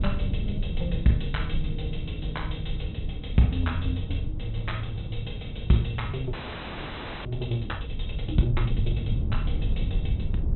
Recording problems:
low-pass filter; nothing above 4 kHz
low-frequency rumble; below 110 Hz, SNR 2 dB
wind on the microphone; below 570 Hz, SNR 24 dB
audio freezing; at 6.5 s for 1 s

